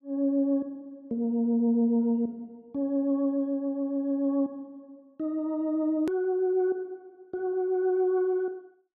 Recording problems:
click at an edit; at 6 s

